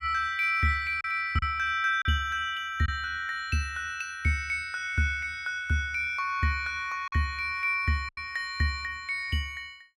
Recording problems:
packet loss; 2% of the sound replaced, filled with silence

